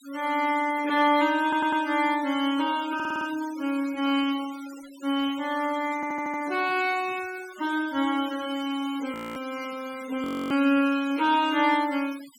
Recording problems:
denoising artefacts; signal-to-artefact ratio 18 dB
audio stuttering; at 1.5 s, at 3 s and at 6 s
frozen audio; at 9 s and at 10 s

